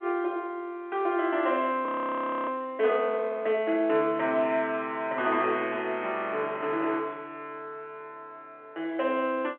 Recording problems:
telephone audio; 280 Hz to 3.5 kHz, G.711
audio freezing; at 2 s for 0.5 s

